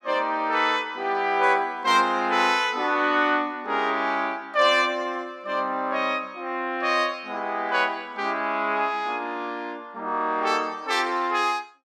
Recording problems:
none

